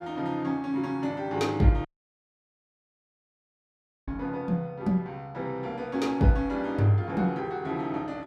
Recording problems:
audio cutting out; at 2 s for 2 s

